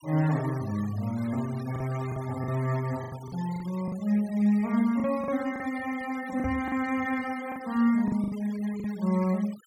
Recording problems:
noise reduction artefacts; signal-to-artefact ratio 20 dB
packet loss; 8% of the sound replaced, filled with the last packet
microphone bump; at 6.5 s; peak -3 dB vs average level

